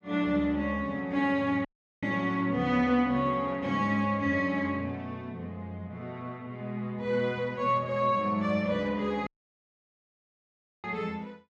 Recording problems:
dropout; at 1.5 s and at 9.5 s for 1.5 s

